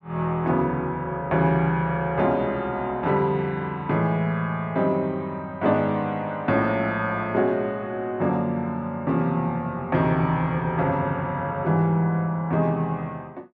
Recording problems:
none

